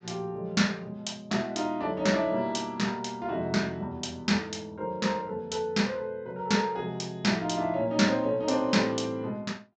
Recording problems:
treble missing; nothing above 8 kHz

